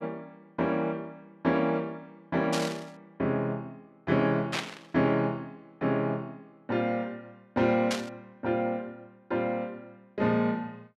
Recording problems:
static burst; at 2.5 s, at 4.5 s and at 8 s; peak +2 dB vs average level

